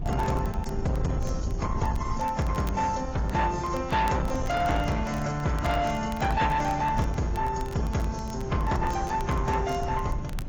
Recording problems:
codec artefacts; AAC, then AAC, log-spectral distance 3 dB
distortion; soft clipping, signal-to-distortion ratio 11 dB
wind on the microphone; below 140 Hz, SNR 9 dB
crackling; vinyl, SNR 23 dB

